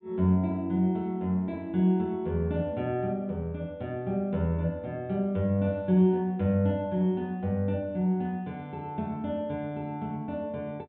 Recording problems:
treble missing; nothing above 4 kHz

